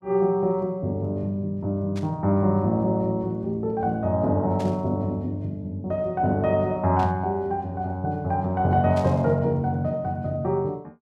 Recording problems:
static burst; 4 times, first at 2 s; peak -12 dB vs average level

